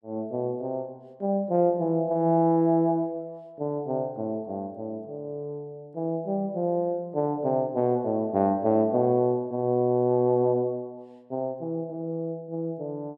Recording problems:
none

